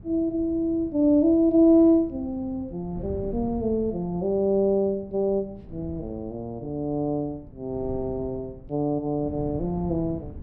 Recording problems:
wind on the microphone; below 190 Hz, SNR 17 dB

